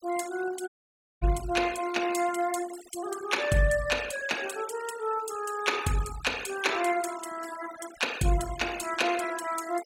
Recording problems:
noise reduction artefacts; signal-to-artefact ratio 13 dB
audio cutting out; at 0.5 s for 0.5 s

